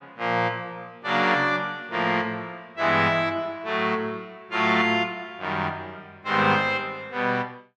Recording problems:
none

